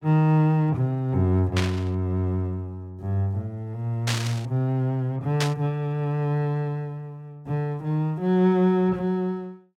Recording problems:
burst of static; at 1.5 s, at 4 s and at 5.5 s; peak +1 dB vs average level

